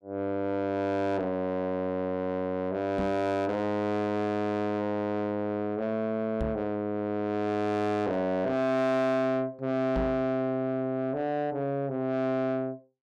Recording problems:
distorted audio; soft clipping, signal-to-distortion ratio 8 dB
knock on the microphone; at 3 s, at 6.5 s and at 10 s; peak +1 dB vs average level

